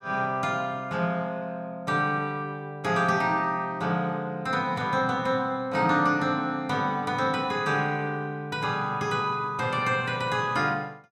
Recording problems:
none

